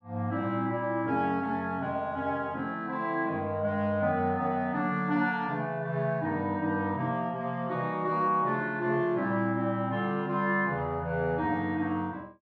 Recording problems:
none

